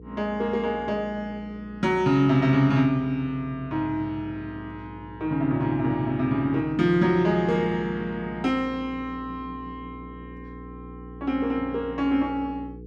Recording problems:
electrical hum; 60 Hz, harmonics up to 480 Hz, SNR 18 dB

